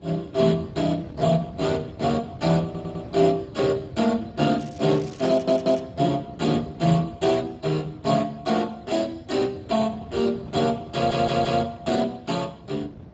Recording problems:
lossy compression; Speex, log-spectral distance 4 dB, nothing above 7.3 kHz
wind on the microphone; below 280 Hz, SNR 18 dB
audio stuttering; at 2.5 s, at 5.5 s and at 11 s
crackle; from 4.5 to 6 s; loose cable, SNR 24 dB

